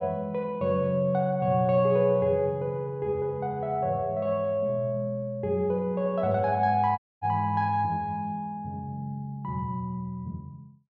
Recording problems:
audio cutting out; at 7 s

